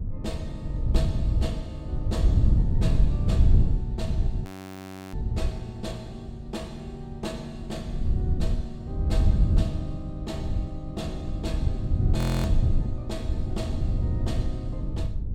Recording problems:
hum; 60 Hz, harmonics up to 360 Hz, SNR 18 dB
wind noise; below 98 Hz, SNR -9 dB
audio freezing; at 4.5 s for 0.5 s and at 12 s

